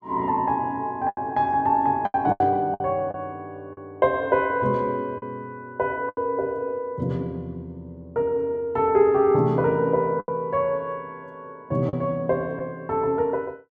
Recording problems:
lost packets; 5% of the sound replaced, filled with the last packet

